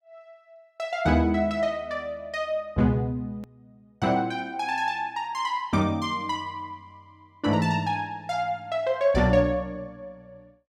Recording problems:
edit click; at 3.5 s

